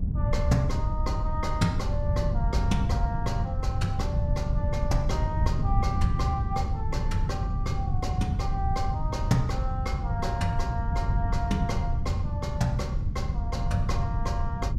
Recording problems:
low-frequency rumble; below 82 Hz, SNR 7 dB
wind noise; below 120 Hz, SNR -3 dB

